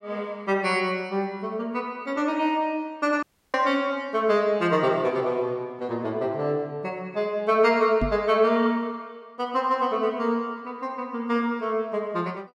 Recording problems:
dropout; at 3 s
microphone bump; at 8 s; peak +1 dB vs average level

